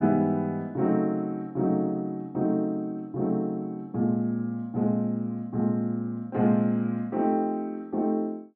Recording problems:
none

